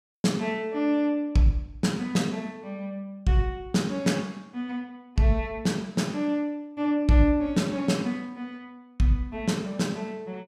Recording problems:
none

